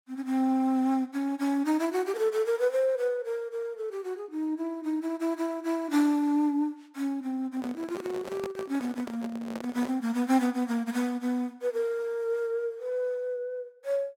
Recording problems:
microphone handling noise; from 7.5 to 10 s; peak -6 dB vs average level

